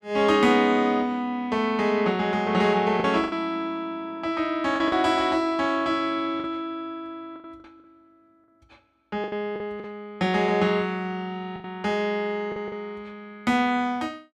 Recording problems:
packet loss; 5% of the sound replaced, filled with the last packet

